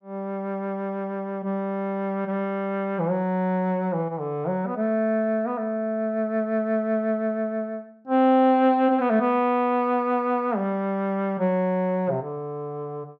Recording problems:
none

